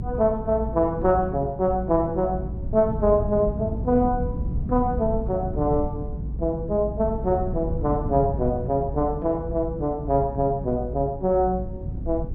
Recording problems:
rumble; below 150 Hz, SNR 7 dB

